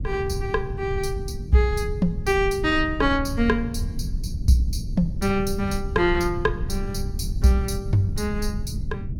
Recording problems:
low-frequency rumble; below 110 Hz, SNR 7 dB

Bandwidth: 18 kHz